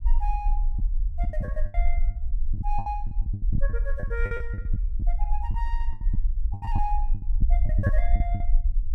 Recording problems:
low-frequency rumble; below 46 Hz, strongest tone 22 Hz, SNR -8 dB
packet loss; 16% of the sound replaced, filled with the last packet

